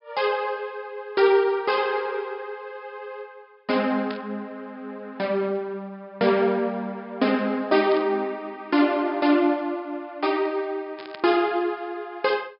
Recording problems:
low-pass filter; nothing above 5.5 kHz
burst of static; at 4 s, at 8 s and at 11 s; peak -10 dB vs average level

